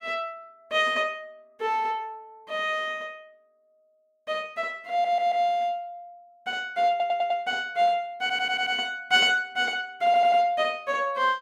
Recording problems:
stutter; 4 times, first at 5 s

